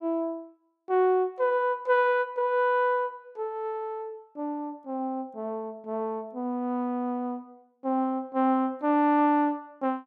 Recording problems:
none

